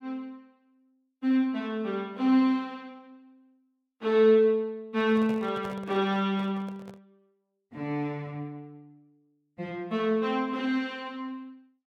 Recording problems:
handling noise; from 5 to 7 s; peak -9 dB vs average level

